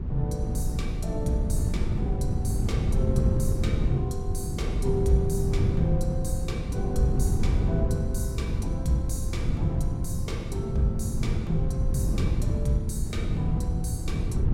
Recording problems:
wind on the microphone; below 140 Hz, SNR -4 dB

